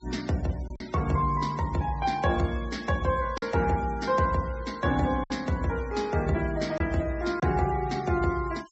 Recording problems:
low-pass filter; nothing above 7.6 kHz
noise reduction artefacts; signal-to-artefact ratio 20 dB
packet loss; 2% of the sound replaced, filled with silence

